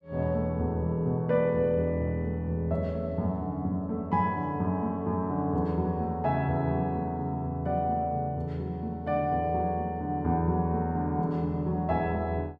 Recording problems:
none

